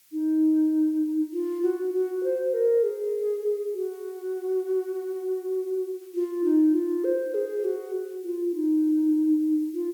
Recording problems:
background hiss; SNR 29 dB

